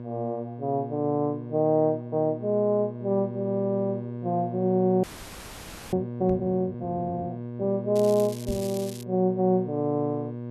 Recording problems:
hum; 60 Hz, harmonics up to 1.1 kHz, SNR 10 dB
audio freezing; at 5 s for 1 s
microphone thump; at 6.5 s and at 8.5 s; peak -2 dB vs average level
crackling; from 8 to 9 s; loose cable, SNR 16 dB

